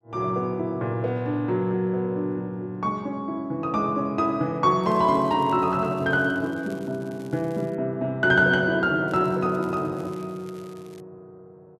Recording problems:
crackle; from 5 to 8 s and from 9 to 11 s; loose cable, SNR 29 dB

